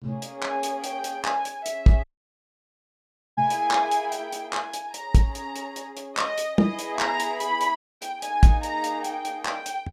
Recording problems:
dropout; at 2 s for 1.5 s and at 8 s

